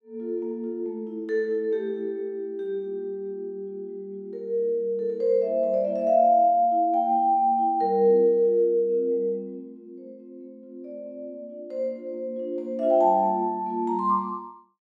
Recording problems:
none

